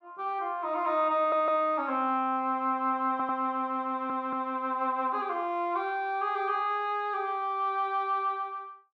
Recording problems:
audio stuttering; at 1 s, at 3 s and at 4 s

